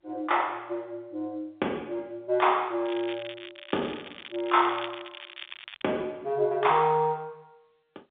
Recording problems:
phone line; 260 Hz to 3.6 kHz, G.711
crackle; from 3 to 6 s; loose cable, SNR 14 dB

